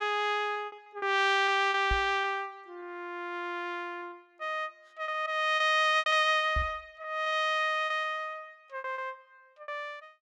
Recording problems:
packet loss; 9% of the sound replaced, filled with repeated pitch periods
microphone bump; at 2 s and at 6.5 s; peak -1 dB vs average level

